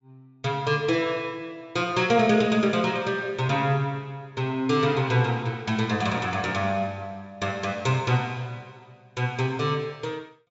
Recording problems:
treble cut off; nothing above 8 kHz

